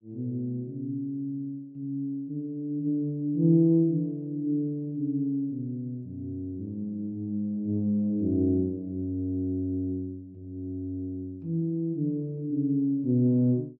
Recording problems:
none

